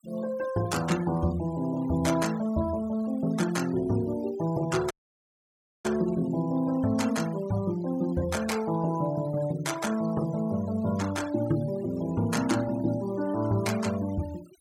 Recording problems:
denoising artefacts; signal-to-artefact ratio 18 dB
dropout; at 5 s for 1 s

